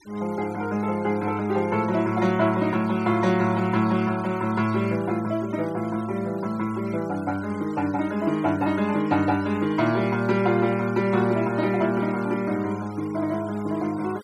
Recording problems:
noise reduction artefacts; signal-to-artefact ratio 21 dB

